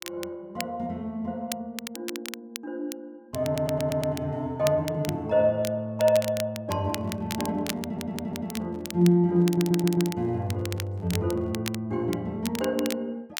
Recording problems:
crackle; vinyl, SNR 12 dB
audio stuttering; at 3.5 s, at 8 s and at 9.5 s
handling noise; from 6.5 to 12 s; peak -13 dB vs average level

